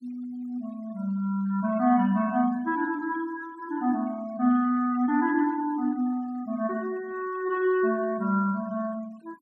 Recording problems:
noise reduction artefacts; signal-to-artefact ratio 25 dB

